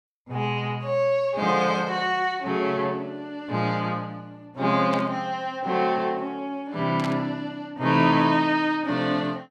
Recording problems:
burst of static; at 5 s and at 7 s; peak -6 dB vs average level

